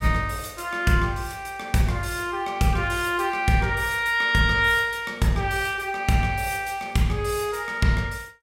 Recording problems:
none

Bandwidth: 16 kHz